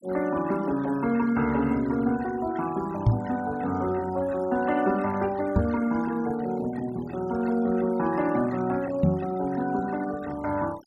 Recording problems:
noise reduction artefacts; signal-to-artefact ratio 19 dB
microphone bump; at 3 s, at 5.5 s and at 9 s; peak +10 dB vs average level

